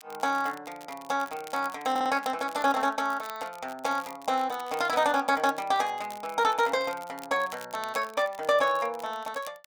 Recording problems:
crackling; vinyl, SNR 20 dB
audio stuttering; at 2 s

